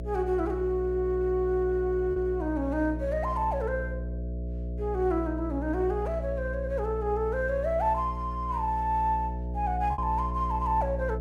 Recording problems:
hum; 60 Hz, harmonics up to 660 Hz, SNR 6 dB
packet loss; 1% of the sound replaced, filled with repeated pitch periods

